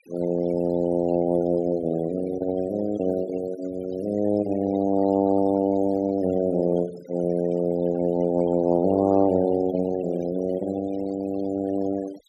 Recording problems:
noise reduction artefacts; signal-to-artefact ratio 20 dB

